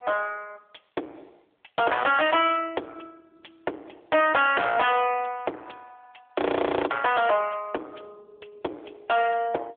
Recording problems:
phone line; 280 Hz to 3.4 kHz, AMR-NB
distortion; soft clipping, signal-to-distortion ratio 8 dB
audio freezing; at 6.5 s

